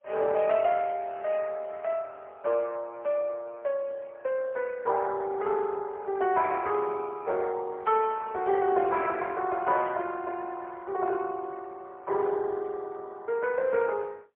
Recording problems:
telephone audio; 340 Hz to 3.1 kHz, AMR-NB, then MP3

